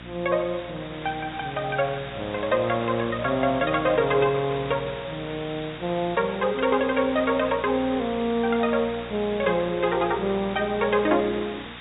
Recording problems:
treble cut off; nothing above 4 kHz
electrical hum; 60 Hz, harmonics up to 780 Hz, SNR 19 dB
background hiss; SNR 13 dB

